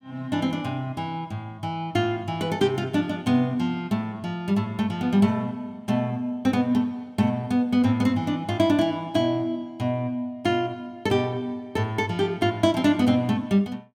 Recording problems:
none

